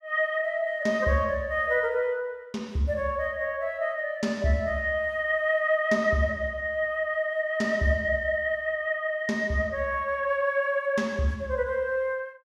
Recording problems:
none

